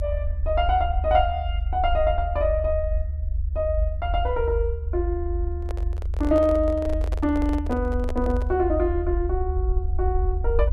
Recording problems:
rumble; below 74 Hz, SNR 2 dB
microphone handling noise; from 5.5 to 8.5 s; peak -4 dB vs average level

